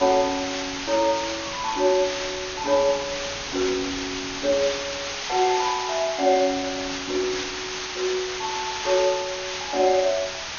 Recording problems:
treble cut off; nothing above 6.7 kHz
hiss; SNR 4 dB
wind noise; below 730 Hz, SNR 21 dB

